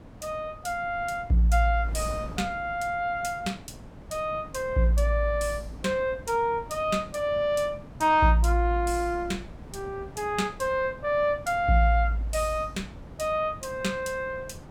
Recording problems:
wind noise; below 350 Hz, SNR 18 dB

